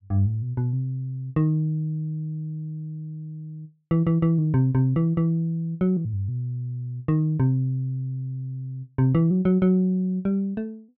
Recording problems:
none

